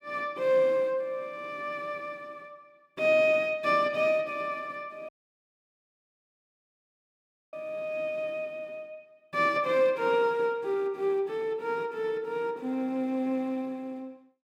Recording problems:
audio cutting out; at 5 s for 2.5 s

